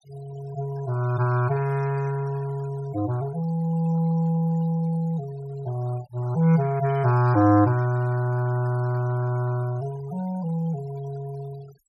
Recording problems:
noise reduction artefacts; signal-to-artefact ratio 22 dB

